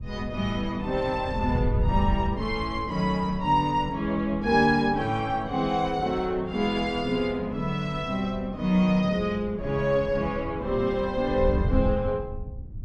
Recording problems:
wind on the microphone; below 100 Hz, SNR 9 dB

